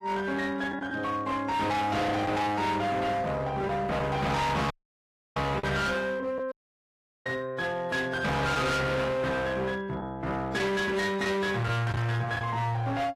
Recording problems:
lossy compression; AAC, log-spectral distance 2 dB, nothing above 13.1 kHz
distortion; hard clipping, signal-to-distortion ratio 6 dB
lost packets; 2% of the sound replaced, filled with the last packet
dropout; at 4.5 s for 0.5 s and at 6.5 s for 0.5 s

